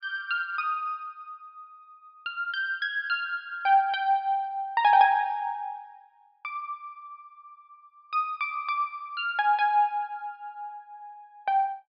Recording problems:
treble missing; nothing above 5.5 kHz

